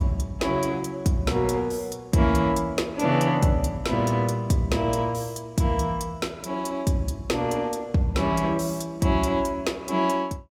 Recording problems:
none

